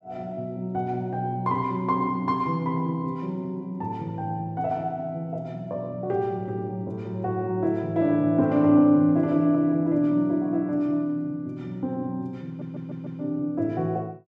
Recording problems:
audio stuttering; at 12 s

